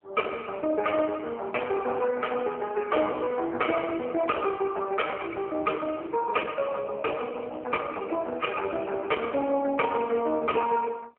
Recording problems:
phone line; 280 Hz to 2.3 kHz, AMR-NB
distorted audio; soft clipping, signal-to-distortion ratio 12 dB

